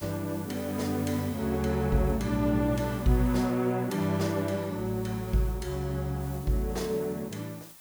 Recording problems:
hiss; SNR 18 dB

